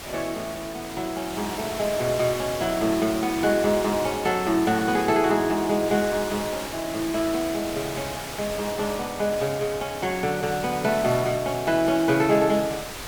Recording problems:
background hiss; slope -2 dB per octave, SNR 10 dB

